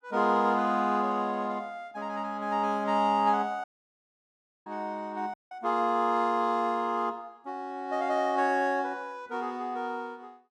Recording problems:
audio cutting out; at 3.5 s for 1 s and at 5.5 s

